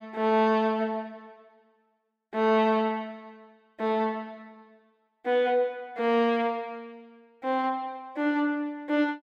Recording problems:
none

